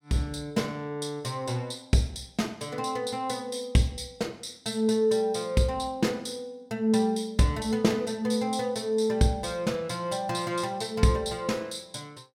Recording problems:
none

